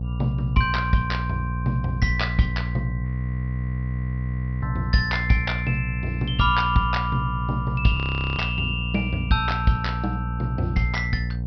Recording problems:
low-pass filter; nothing above 5.5 kHz
mains hum; 60 Hz, harmonics up to 480 Hz, SNR 4 dB
audio freezing; at 3 s for 1.5 s and at 8 s

